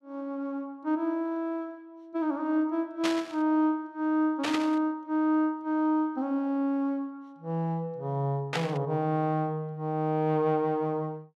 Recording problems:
static burst; at 3 s, at 4.5 s and at 8.5 s; peak +2 dB vs average level

